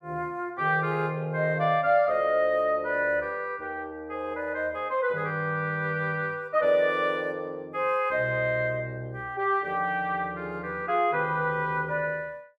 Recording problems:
none

